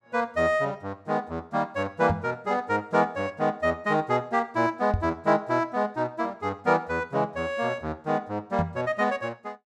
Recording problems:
microphone bump; at 2 s, at 5 s and at 8.5 s; peak +4 dB vs average level

